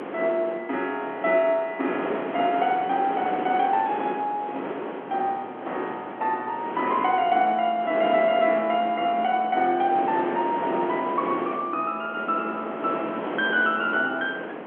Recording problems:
telephone audio; 280 Hz to 3.3 kHz, G.711
wind noise; below 980 Hz, SNR 9 dB

